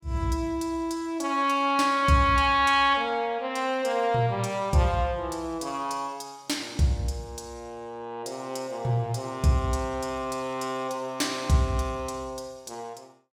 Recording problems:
none

